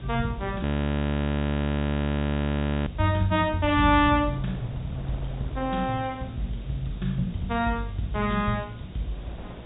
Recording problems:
low-pass filter; nothing above 4 kHz
hum; 60 Hz, harmonics up to 720 Hz, SNR 20 dB
hiss; SNR 27 dB
wind on the microphone; below 610 Hz, SNR 20 dB
frozen audio; at 0.5 s for 2 s

